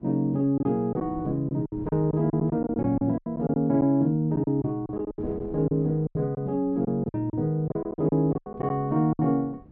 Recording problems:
wind noise; below 280 Hz, SNR 20 dB
lost packets; 13% of the sound replaced, filled with silence

